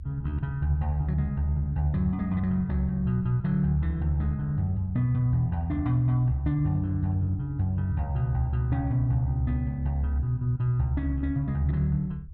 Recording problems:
low-frequency rumble; below 80 Hz, strongest tone 64 Hz, SNR 14 dB

